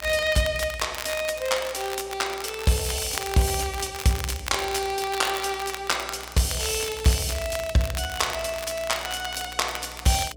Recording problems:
hum; 60 Hz, harmonics up to 660 Hz, SNR 23 dB
crackling; vinyl, SNR 10 dB

